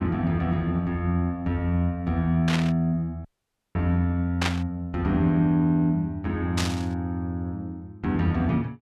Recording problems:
burst of static; at 2.5 s, at 4.5 s and at 6.5 s; peak +3 dB vs average level
audio cutting out; at 3.5 s for 0.5 s

